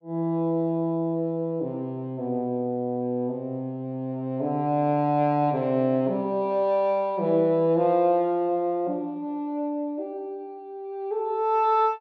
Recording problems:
none

